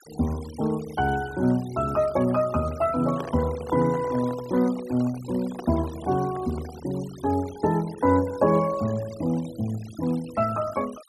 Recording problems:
noise reduction artefacts; signal-to-artefact ratio 20 dB
handling noise; from 3 to 7 s; peak -6 dB vs average level

